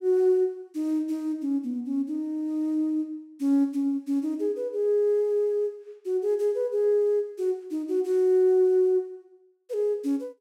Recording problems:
none

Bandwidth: 16 kHz